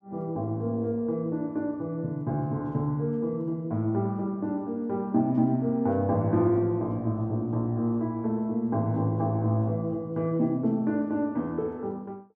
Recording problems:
none

